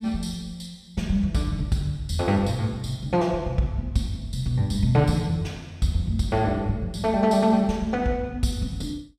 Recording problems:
none

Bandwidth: 14 kHz